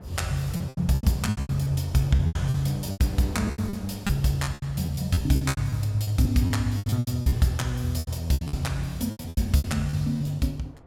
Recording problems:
wind noise; below 490 Hz, SNR 20 dB
lost packets; 18% of the sound replaced, filled with repeated pitch periods

